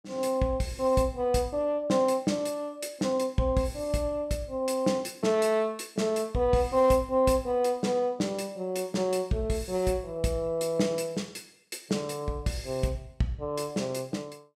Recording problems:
none

